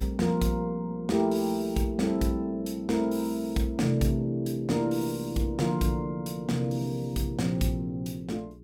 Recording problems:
hum; 60 Hz, harmonics up to 420 Hz, SNR 23 dB

